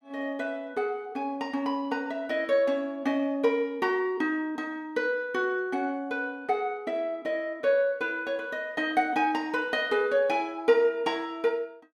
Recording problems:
none

